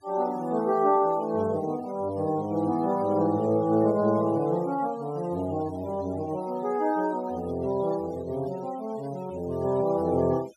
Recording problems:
noise reduction artefacts; signal-to-artefact ratio 23 dB

